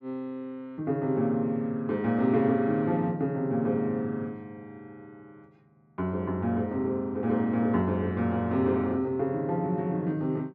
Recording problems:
none

